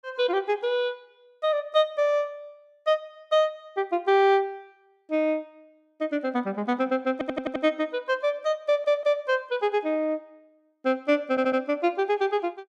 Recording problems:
stutter; at 7 s, at 8.5 s and at 11 s

